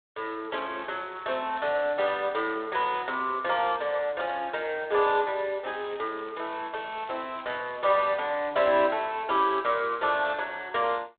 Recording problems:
telephone audio; 280 Hz to 3.9 kHz, G.726
crackling; from 0.5 to 2 s and from 5.5 to 8.5 s; loose cable, SNR 27 dB

